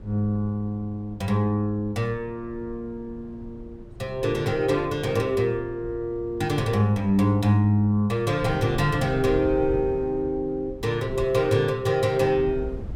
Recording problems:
wind on the microphone; below 150 Hz, SNR 16 dB

